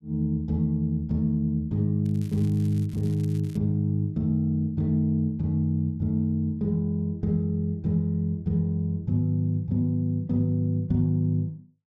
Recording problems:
crackling; from 2 to 3.5 s; loose cable, SNR 27 dB

